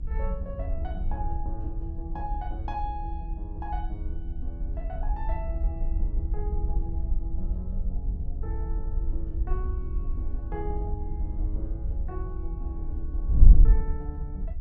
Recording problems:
low-frequency rumble; below 70 Hz, strongest tone 68 Hz, SNR 5 dB
wind noise; below 54 Hz, SNR -10 dB

